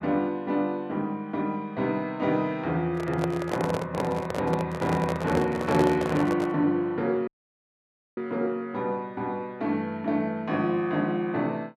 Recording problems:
microphone handling noise; from 3 to 6.5 s; peak +2 dB vs average level
dropout; at 7.5 s for 1 s

